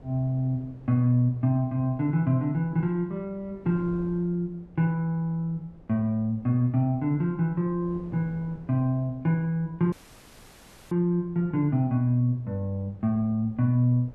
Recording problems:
wind noise; below 330 Hz, SNR 24 dB
dropout; at 10 s for 1 s

